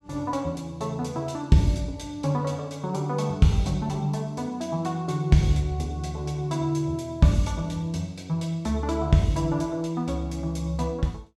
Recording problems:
none

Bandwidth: 14 kHz